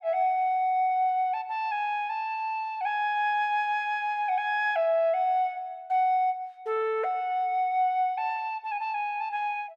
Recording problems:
none

